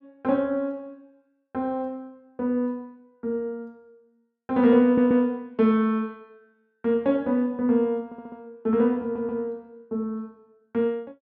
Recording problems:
stutter; at 5 s, at 8 s and at 9 s

